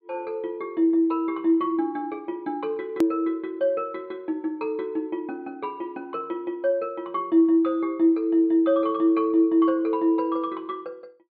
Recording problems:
treble missing; nothing above 4.7 kHz
edit click; at 3 s

